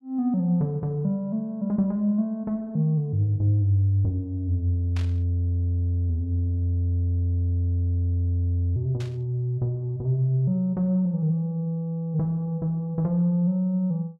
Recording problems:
static burst; at 5 s and at 9 s; peak -12 dB vs average level

